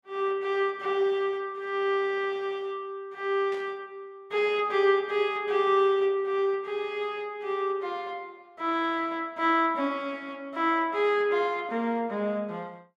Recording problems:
burst of static; at 3.5 s; peak -14 dB vs average level

